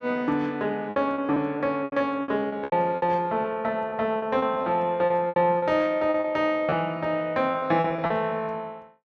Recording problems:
packet loss; 13% of the sound replaced, filled with repeated pitch periods

